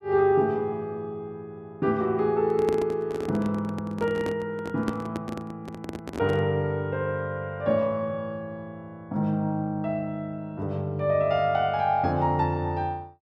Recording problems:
handling noise; from 2.5 to 6.5 s; peak 0 dB vs average level

